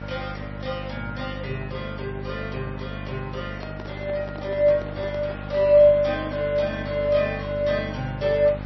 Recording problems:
lossy compression; MP3, log-spectral distance 3 dB, nothing above 5.7 kHz
hum; 50 Hz, harmonics up to 900 Hz, SNR 11 dB
hiss; SNR 21 dB
handling noise; from 3.5 to 5.5 s; peak -11 dB vs average level

